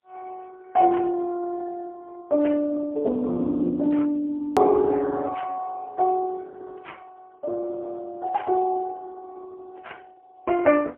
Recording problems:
phone line; 240 Hz to 2.8 kHz, AMR-NB, then MP3
hard cut with a click; at 4.5 s

